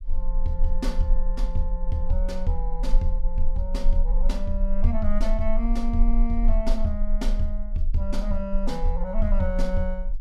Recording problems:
rumble; below 32 Hz, strongest tone 20 Hz, SNR -2 dB

